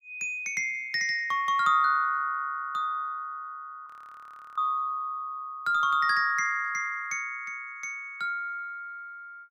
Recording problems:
audio freezing; at 4 s for 0.5 s

